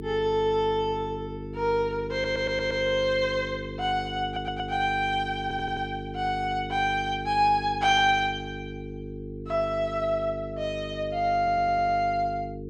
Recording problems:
electrical hum; 50 Hz, harmonics up to 450 Hz, SNR 10 dB
audio stuttering; 4 times, first at 2 s

